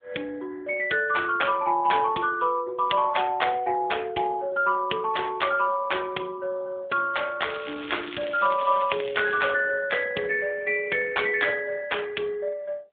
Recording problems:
telephone audio; 220 Hz to 3.6 kHz, AMR-NB
crackling; from 7.5 to 9.5 s; loose cable, SNR 14 dB

